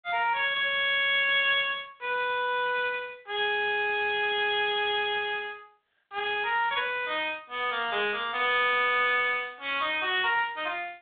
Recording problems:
telephone audio; 280 Hz to 3.7 kHz, G.726

